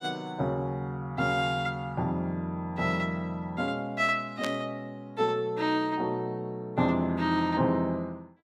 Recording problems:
static burst; at 4.5 s; peak -2 dB vs average level

